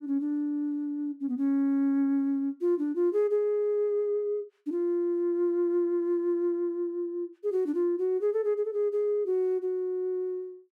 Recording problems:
none

